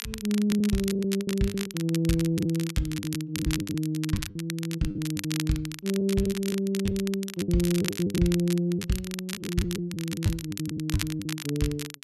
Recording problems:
crackling; vinyl, SNR 9 dB
lost packets; 12% of the sound replaced, filled with the last packet

